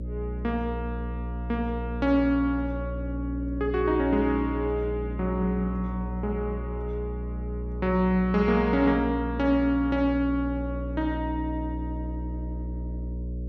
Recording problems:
hum; 60 Hz, harmonics up to 540 Hz, SNR 6 dB

